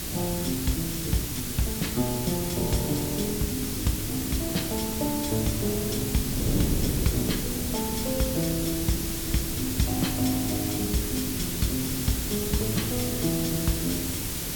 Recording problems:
hiss; SNR 1 dB
wind on the microphone; below 280 Hz, SNR 5 dB

